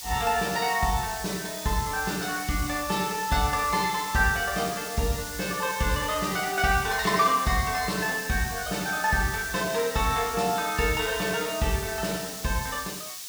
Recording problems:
background hiss; slope +4 dB per octave, SNR 9 dB

